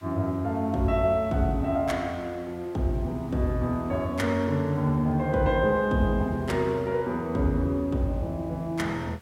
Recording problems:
background hiss; SNR 29 dB

